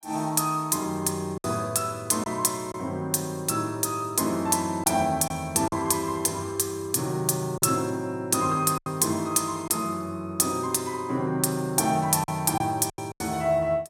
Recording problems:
packet loss; 4% of the sound replaced, filled with silence

